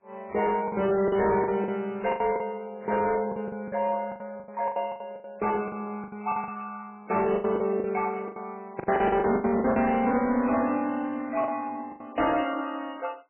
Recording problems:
lossy codec; MP2, then MP3, log-spectral distance 3 dB, nothing above 2.7 kHz
distorted audio; hard clipping, signal-to-distortion ratio 12 dB
lost packets; 13% of the sound replaced, filled with the last packet

